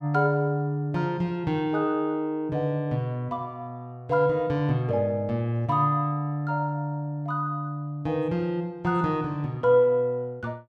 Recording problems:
none

